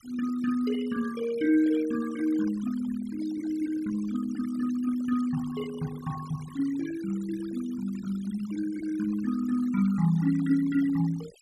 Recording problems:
noise reduction artefacts; signal-to-artefact ratio 17 dB

